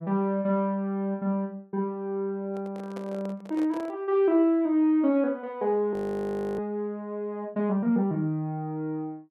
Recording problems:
handling noise; from 2.5 to 4 s; peak -9 dB vs average level
frozen audio; at 6 s for 0.5 s

